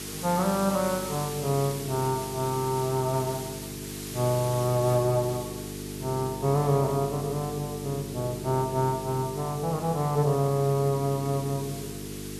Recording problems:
electrical hum; 50 Hz, harmonics up to 450 Hz, SNR 11 dB
hiss; slope +1 dB per octave, SNR 12 dB

